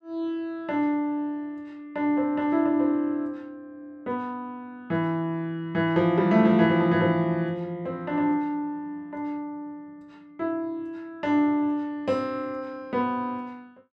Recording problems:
none

